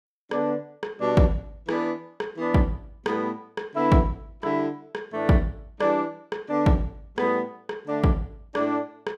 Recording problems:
none

